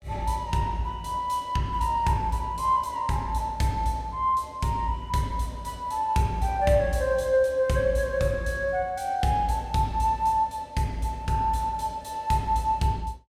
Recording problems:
none

